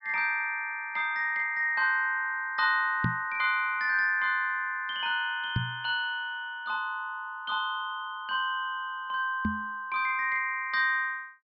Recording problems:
low-pass filter; nothing above 5.5 kHz
microphone thump; at 3 s, at 5.5 s and at 9.5 s; peak +3 dB vs average level

